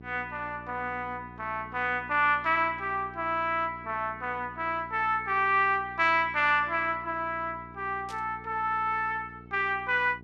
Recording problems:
electrical hum; 60 Hz, harmonics up to 840 Hz, SNR 20 dB
static burst; at 8 s; peak -13 dB vs average level

